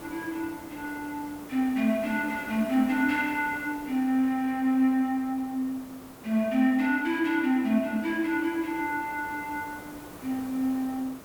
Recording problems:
background hiss; slope -6 dB per octave, SNR 17 dB

